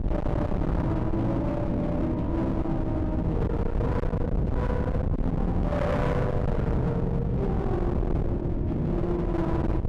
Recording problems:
distortion; hard clipping, signal-to-distortion ratio 7 dB
wind noise; below 250 Hz, SNR 1 dB

